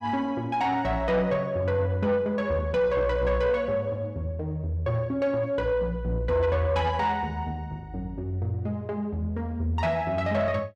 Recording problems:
distortion; soft clipping, signal-to-distortion ratio 12 dB

